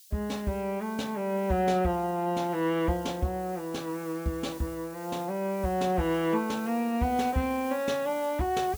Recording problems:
background hiss; SNR 19 dB

